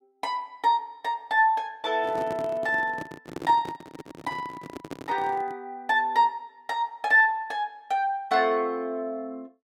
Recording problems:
handling noise; from 2 to 5.5 s; peak -5 dB vs average level

